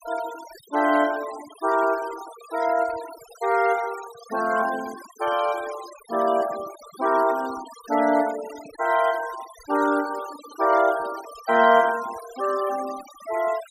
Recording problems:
denoising artefacts; signal-to-artefact ratio 16 dB

